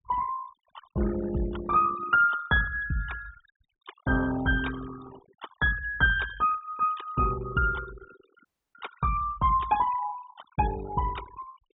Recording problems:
low-pass filter; nothing above 4 kHz
denoising artefacts; signal-to-artefact ratio 16 dB
audio cutting out; at 8.5 s

